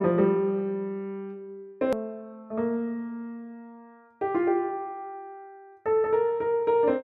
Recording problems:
click at an edit; at 2 s

